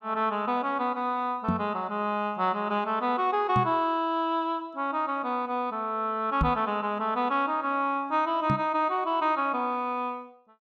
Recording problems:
knock on the microphone; 4 times, first at 1.5 s; peak +4 dB vs average level

